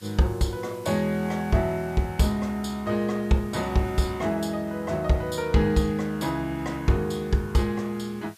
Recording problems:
hiss; slope +2 dB per octave, SNR 26 dB

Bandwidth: 14.5 kHz